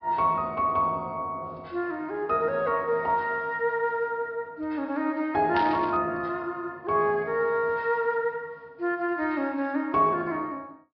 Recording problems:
low-pass filter; nothing above 5.5 kHz
static burst; at 5.5 s; peak -3 dB vs average level

